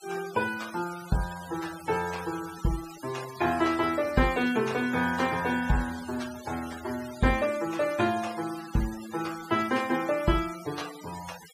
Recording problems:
denoising artefacts; signal-to-artefact ratio 14 dB

